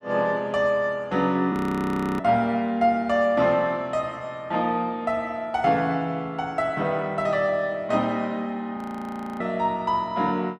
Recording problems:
audio freezing; at 1.5 s for 0.5 s and at 9 s for 0.5 s

